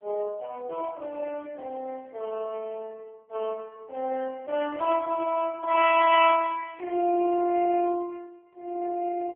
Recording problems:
telephone audio; 280 Hz to 3.3 kHz, AMR-NB

